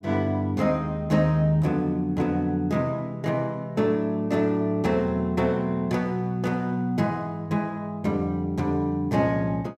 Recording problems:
none

